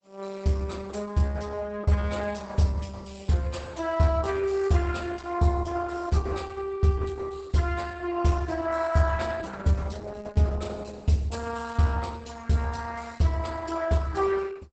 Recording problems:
lossy compression; Opus, log-spectral distance 4 dB, nothing above 8 kHz

